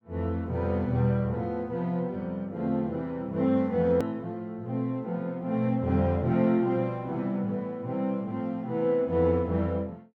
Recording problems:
edit click; at 4 s

